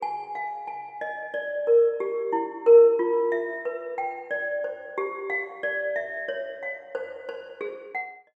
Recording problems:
none

